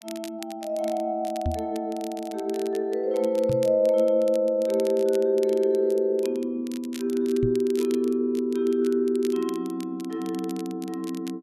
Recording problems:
crackle; vinyl, SNR 21 dB
microphone bump; at 1.5 s, at 3.5 s and at 7.5 s; peak +1 dB vs average level

